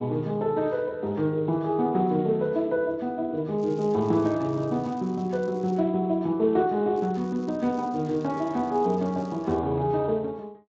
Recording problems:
lossy compression; Speex, log-spectral distance 2 dB
crackle; from 3.5 to 6 s and from 7 to 9.5 s; loose cable, SNR 29 dB

